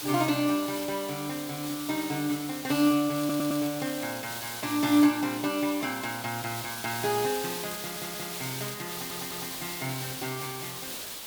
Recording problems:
hiss; slope 0 dB per octave, SNR 6 dB
crackling; from 3 to 4.5 s and from 7.5 to 9 s; loose cable, SNR 17 dB
audio stuttering; at 3 s, at 8 s and at 9 s

